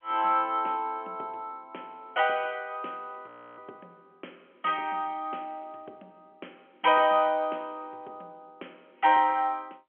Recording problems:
phone line; 280 Hz to 3.3 kHz, G.711
frozen audio; at 3.5 s

